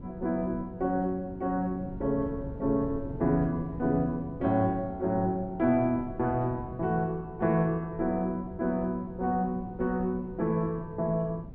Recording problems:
wind noise; below 230 Hz, SNR 14 dB

